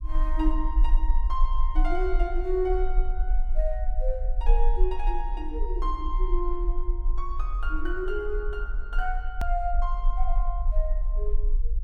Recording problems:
rumble; below 40 Hz, strongest tone 24 Hz, SNR -4 dB
click at an edit; at 9.5 s

